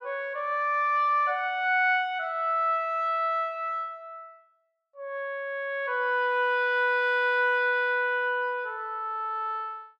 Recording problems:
none

